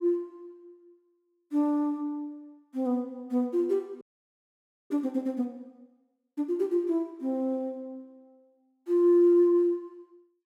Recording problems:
audio freezing; at 4 s for 1 s

